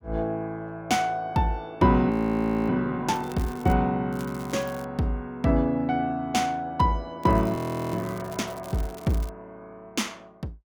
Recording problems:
audio freezing; at 2 s for 0.5 s and at 7.5 s
crackle; at 3 s, at 4 s and from 7 to 9.5 s; loose cable, SNR 22 dB

